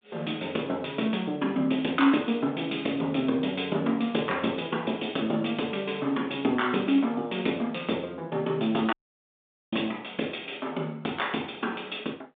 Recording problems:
telephone audio; 190 Hz to 3.7 kHz, G.726
audio cutting out; at 9 s for 1 s

